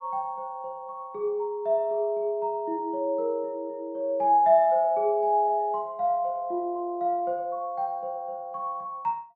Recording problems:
none

